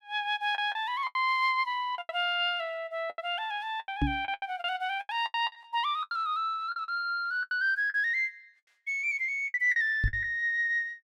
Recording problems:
lost packets; 12% of the sound replaced, filled with the last packet
microphone bump; at 4 s and at 10 s; peak +4 dB vs average level

